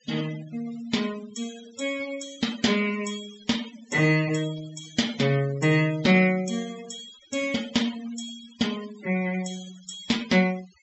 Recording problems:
treble missing; nothing above 7.7 kHz
noise reduction artefacts; signal-to-artefact ratio 15 dB

